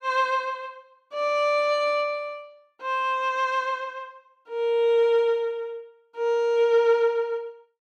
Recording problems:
none

